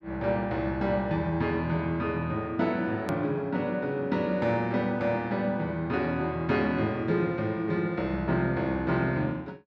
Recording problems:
click at an edit; at 3 s

